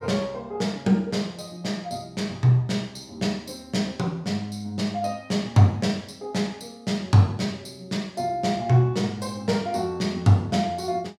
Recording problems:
none

